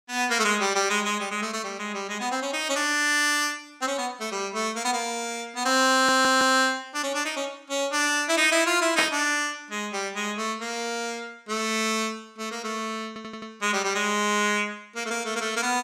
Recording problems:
audio stuttering; at 6 s and at 13 s
burst of static; at 9 s; peak +4 dB vs average level

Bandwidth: 16.5 kHz